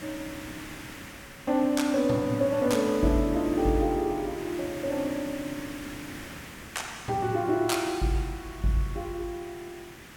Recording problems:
background hiss; SNR 15 dB

